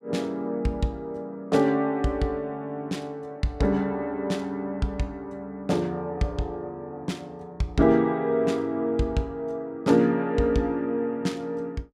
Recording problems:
none

